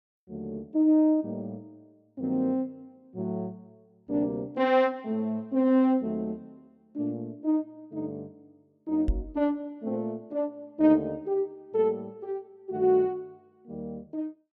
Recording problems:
knock on the microphone; at 9 s; peak +4 dB vs average level

